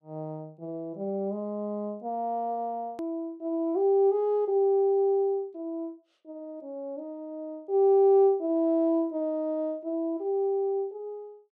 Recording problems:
edit click; at 3 s

